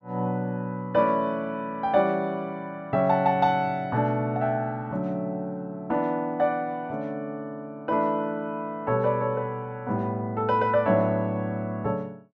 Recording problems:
none

